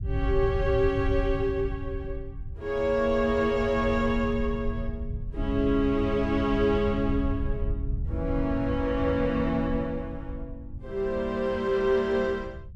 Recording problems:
rumble; below 100 Hz, SNR 7 dB

